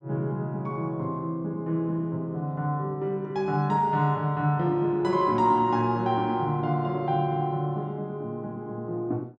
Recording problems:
none

